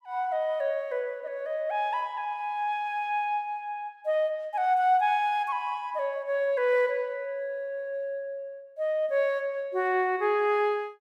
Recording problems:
none

